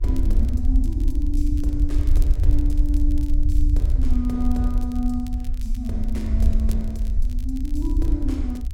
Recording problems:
hum; 50 Hz, harmonics up to 700 Hz, SNR 26 dB
low-frequency rumble; below 60 Hz, SNR -6 dB
crackle; vinyl, SNR 21 dB

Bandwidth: 16.5 kHz